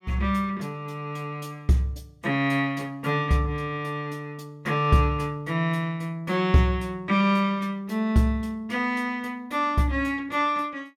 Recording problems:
none

